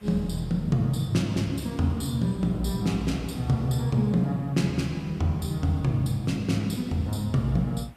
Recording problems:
hiss; SNR 30 dB

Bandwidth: 14.5 kHz